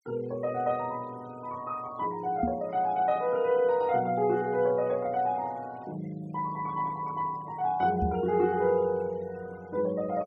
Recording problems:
denoising artefacts; signal-to-artefact ratio 25 dB
microphone thump; at 2.5 s and at 8 s; peak +2 dB vs average level

